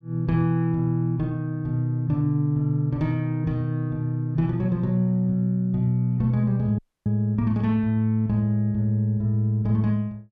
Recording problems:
audio cutting out; at 7 s

